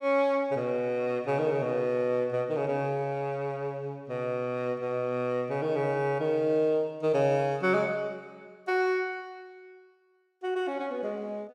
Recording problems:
none

